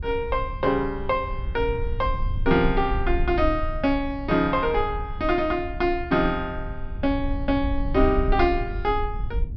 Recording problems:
treble cut off; nothing above 5.5 kHz
rumble; below 66 Hz, SNR 7 dB

